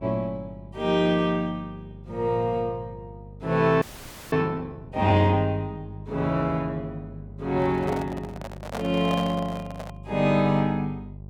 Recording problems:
hum; 50 Hz, harmonics up to 600 Hz, SNR 17 dB
audio freezing; at 4 s for 0.5 s
handling noise; from 7.5 to 10 s; peak -4 dB vs average level

